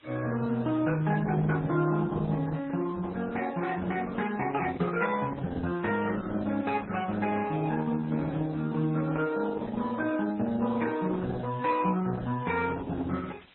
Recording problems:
lossy compression; Opus, then MP3, log-spectral distance 7 dB, nothing above 3.9 kHz
hiss; SNR 27 dB

